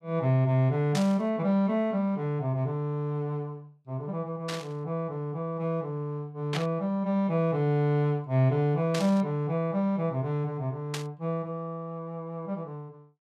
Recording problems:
burst of static; 5 times, first at 1 s; peak -1 dB vs average level

